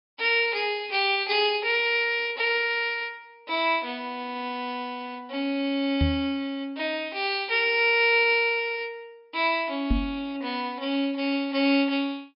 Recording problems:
treble missing; nothing above 5.5 kHz
microphone bump; at 6 s and at 10 s; peak +3 dB vs average level

